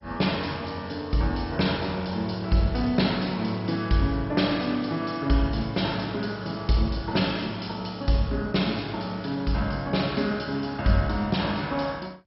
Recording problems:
lossy compression; MP2, log-spectral distance 6 dB, nothing above 5.5 kHz

